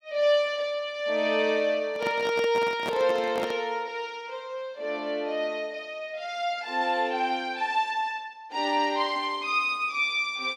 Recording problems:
handling noise; from 2 to 3.5 s; peak -2 dB vs average level

